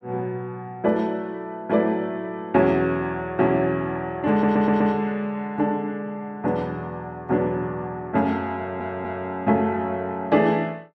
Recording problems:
stutter; at 4.5 s and at 8.5 s

